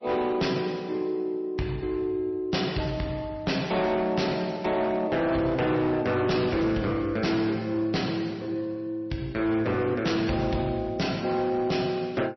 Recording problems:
codec artefacts; MP3, log-spectral distance 3 dB, nothing above 5.8 kHz
distortion; hard clipping, signal-to-distortion ratio 11 dB

